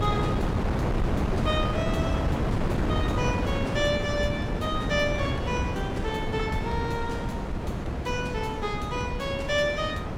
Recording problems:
wind on the microphone; below 440 Hz, SNR -1 dB

